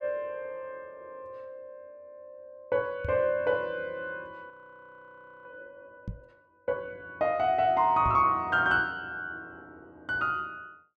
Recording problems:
knock on the microphone; at 3 s, at 6 s and at 8 s; peak -2 dB vs average level
frozen audio; at 4.5 s for 1 s

